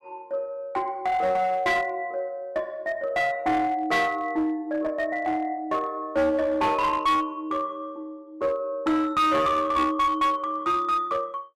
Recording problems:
distorted audio; hard clipping, uneven, signal-to-distortion ratio 11 dB

